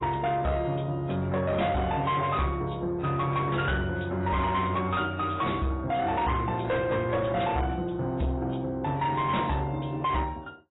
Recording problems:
lossy compression; AAC, log-spectral distance 3 dB, nothing above 3.8 kHz
distorted audio; soft clipping, signal-to-distortion ratio 10 dB

